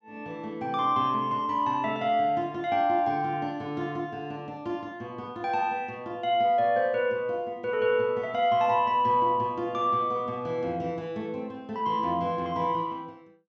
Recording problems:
treble missing; nothing above 8 kHz

